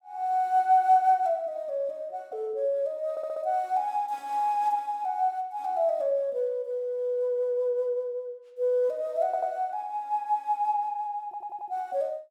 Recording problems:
stutter; at 3 s, at 9.5 s and at 11 s

